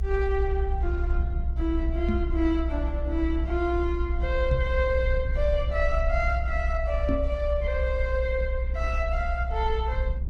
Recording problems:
lossy compression; Opus, log-spectral distance 2 dB
low-frequency rumble; below 64 Hz, strongest tone 62 Hz, SNR 0 dB
microphone thump; at 2 s, at 4.5 s and at 7 s; peak +5 dB vs average level

